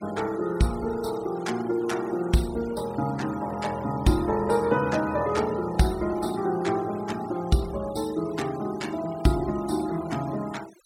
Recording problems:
noise reduction artefacts; signal-to-artefact ratio 18 dB

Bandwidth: 16 kHz